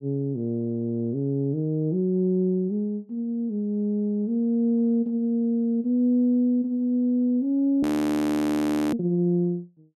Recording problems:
frozen audio; at 8 s for 1 s

